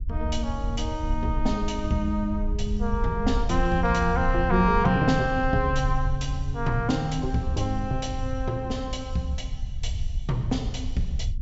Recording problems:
treble missing; nothing above 8 kHz
low-frequency rumble; below 72 Hz, SNR 5 dB

